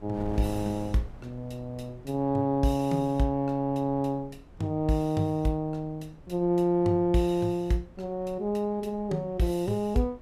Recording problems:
wind on the microphone; below 240 Hz, SNR 21 dB

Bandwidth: 15.5 kHz